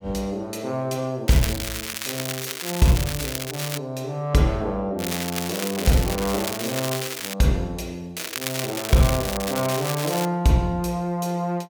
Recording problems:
crackling; from 1.5 to 4 s, from 5 to 7.5 s and from 8 to 10 s; loose cable, SNR 5 dB

